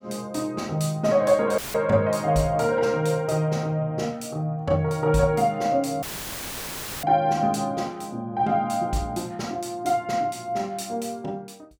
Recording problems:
dropout; at 1.5 s and at 6 s for 1 s; filled with static

